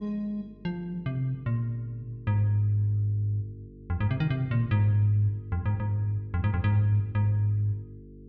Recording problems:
hum; 50 Hz, harmonics up to 450 Hz, SNR 21 dB

